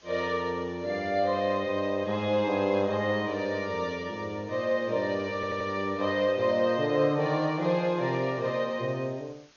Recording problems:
codec artefacts; MP2, log-spectral distance 3 dB, nothing above 6.5 kHz
hiss; slope 0 dB per octave, SNR 28 dB
audio stuttering; at 5.5 s

